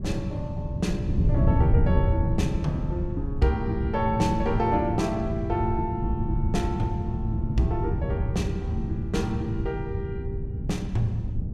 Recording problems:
wind noise; below 140 Hz, SNR 0 dB

